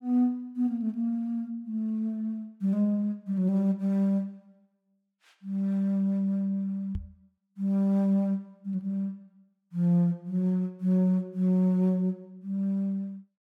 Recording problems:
knock on the microphone; at 7 s; peak -2 dB vs average level

